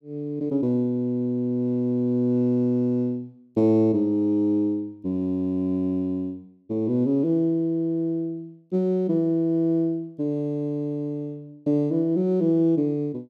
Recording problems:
none

